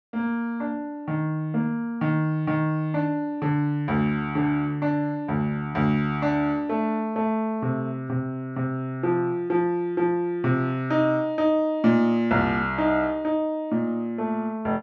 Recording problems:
none

